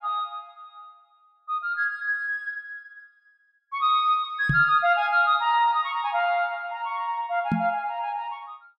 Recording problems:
knock on the microphone; at 4.5 s and at 7.5 s; peak +3 dB vs average level

